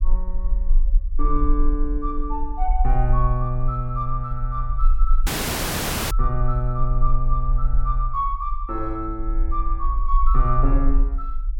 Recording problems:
low-frequency rumble; below 40 Hz, strongest tone 24 Hz, SNR -1 dB
dropout; at 5.5 s for 1 s

